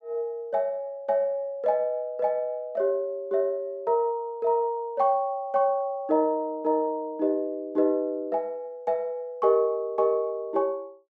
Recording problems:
none

